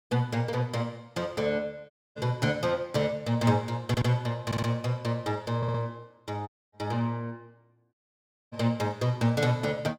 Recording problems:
dropout; at 2 s, at 6.5 s and at 8 s for 0.5 s
stutter; at 4 s, at 4.5 s and at 5.5 s

